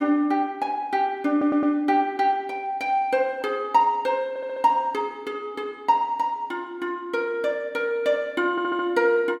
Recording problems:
audio stuttering; at 1.5 s, at 4.5 s and at 8.5 s

